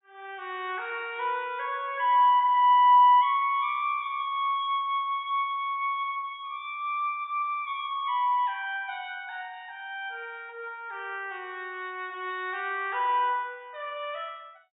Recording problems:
treble cut off; nothing above 4 kHz

